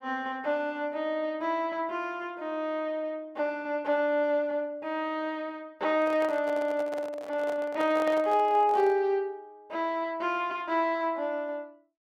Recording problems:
handling noise; from 6 to 9 s; peak -5 dB vs average level

